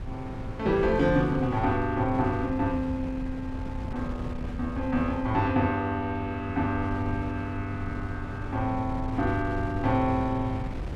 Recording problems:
wind noise; below 190 Hz, SNR 9 dB

